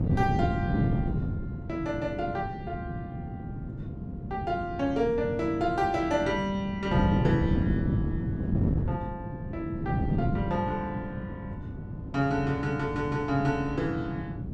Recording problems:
wind noise; below 240 Hz, SNR 2 dB

